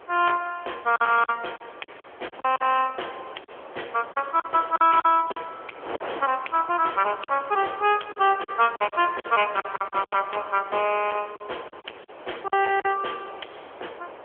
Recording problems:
phone line; 300 Hz to 3.3 kHz, AMR-NB
distorted audio; soft clipping, signal-to-distortion ratio 12 dB
wind on the microphone; below 1.3 kHz, SNR 18 dB
lost packets; 9% of the sound replaced, filled with silence

